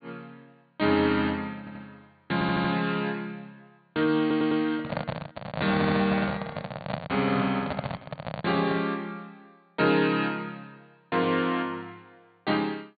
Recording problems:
treble cut off; nothing above 4.6 kHz
stutter; 4 times, first at 1.5 s
microphone handling noise; from 4.5 to 9 s; peak 0 dB vs average level

